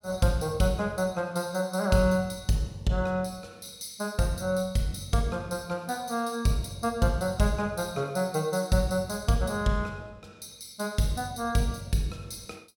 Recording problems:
none

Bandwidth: 17 kHz